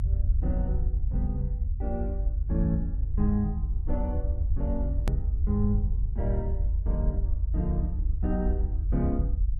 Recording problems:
low-frequency rumble; below 74 Hz, strongest tone 48 Hz, SNR -4 dB
click at an edit; at 5 s

